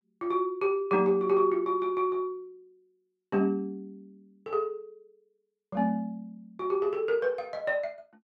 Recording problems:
none

